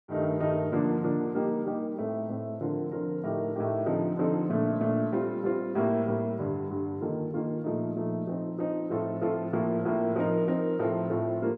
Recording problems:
none

